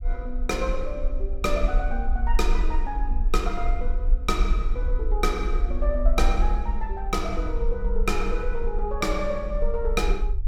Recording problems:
low-frequency rumble; below 44 Hz, strongest tone 24 Hz, SNR -1 dB

